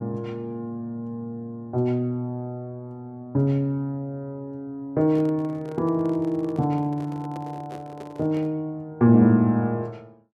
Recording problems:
handling noise; from 5 to 8.5 s; peak -11 dB vs average level

